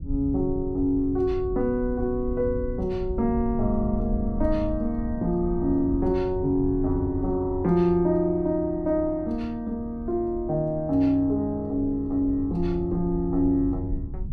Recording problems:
low-frequency rumble; below 86 Hz, SNR 11 dB

